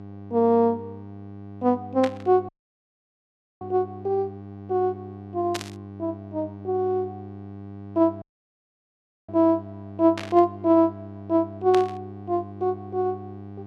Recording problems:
hum; 50 Hz, harmonics up to 1.2 kHz, SNR 16 dB
burst of static; 4 times, first at 2 s; peak -3 dB vs average level
audio cutting out; at 2.5 s for 1 s and at 8 s for 1 s

